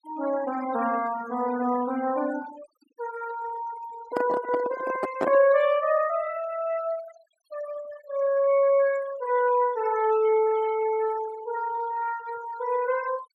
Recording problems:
denoising artefacts; signal-to-artefact ratio 16 dB
microphone handling noise; from 4 to 5.5 s; peak +2 dB vs average level

